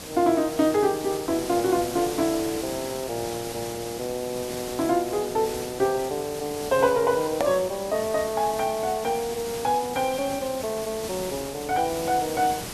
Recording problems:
hiss; slope -3 dB per octave, SNR 10 dB
edit click; at 7.5 s

